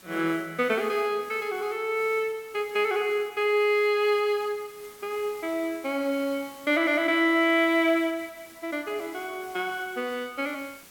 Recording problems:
hiss; slope -2 dB per octave, SNR 22 dB

